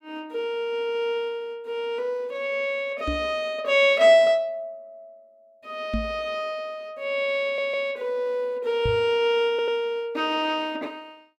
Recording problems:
knock on the microphone; at 3 s, at 6 s and at 9 s; peak 0 dB vs average level
stutter; at 7.5 s and at 9.5 s

